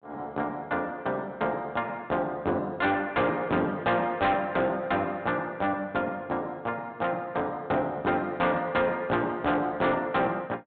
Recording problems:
treble cut off; nothing above 4 kHz
distorted audio; soft clipping, signal-to-distortion ratio 10 dB

